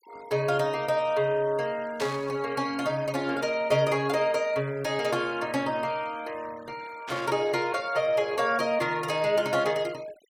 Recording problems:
denoising artefacts; signal-to-artefact ratio 22 dB
static burst; at 2 s and at 7 s; peak -5 dB vs average level

